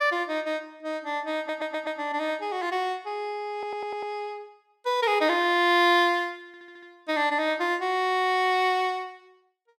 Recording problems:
stutter; at 1.5 s, at 3.5 s and at 6.5 s

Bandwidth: 16.5 kHz